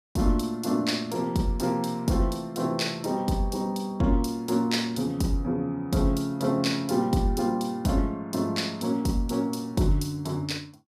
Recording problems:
none

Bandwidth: 14.5 kHz